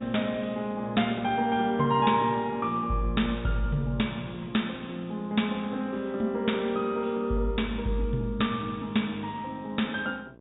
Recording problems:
low-pass filter; nothing above 4 kHz
hum; 60 Hz, harmonics up to 1.6 kHz, SNR 25 dB

